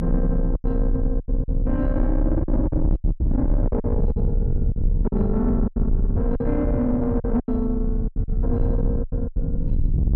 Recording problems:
distorted audio; soft clipping, signal-to-distortion ratio 10 dB
rumble; below 96 Hz, strongest tone 34 Hz, SNR -1 dB
lost packets; 12% of the sound replaced, filled with silence

